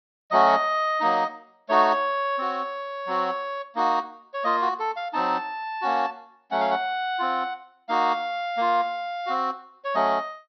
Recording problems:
low-pass filter; nothing above 5.9 kHz

